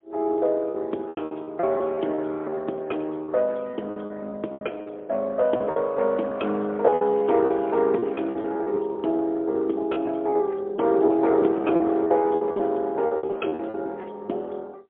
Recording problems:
telephone audio; 260 Hz to 3.7 kHz, AMR-NB, then MP3
packet loss; 13% of the sound replaced, filled with repeated pitch periods

